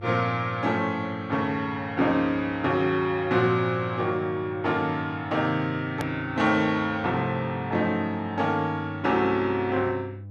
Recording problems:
hum; 50 Hz, harmonics up to 500 Hz, SNR 16 dB
click at an edit; at 6 s

